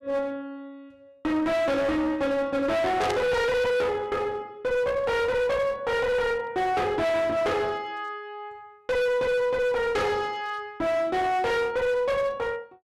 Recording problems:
distorted audio; hard clipping, uneven, signal-to-distortion ratio 5 dB
burst of static; at 3 s; peak -4 dB vs average level

